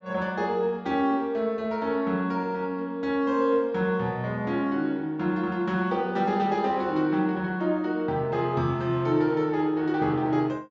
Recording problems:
low-pass filter; nothing above 8 kHz

